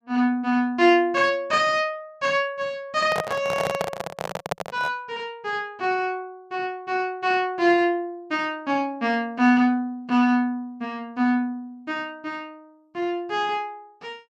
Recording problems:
microphone handling noise; from 3 to 5 s; peak +2 dB vs average level

